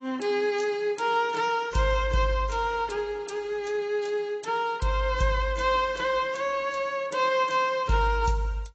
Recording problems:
codec artefacts; AAC, log-spectral distance 2 dB, nothing above 7.6 kHz

